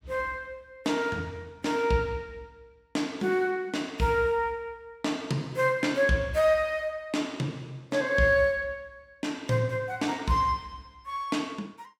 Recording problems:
none

